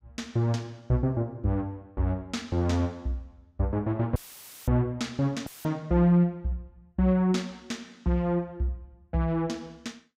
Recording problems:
dropout; at 4 s for 0.5 s and at 5.5 s; filled with static

